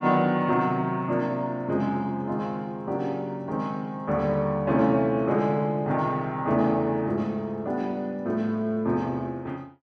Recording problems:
none

